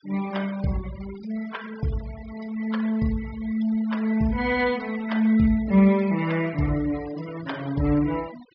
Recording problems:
treble cut off; nothing above 5.5 kHz
noise reduction artefacts; signal-to-artefact ratio 19 dB

